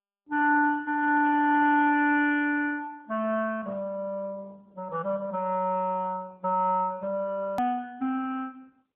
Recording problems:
telephone audio; 240 Hz to 3.2 kHz, AMR-NB
edit click; at 7.5 s

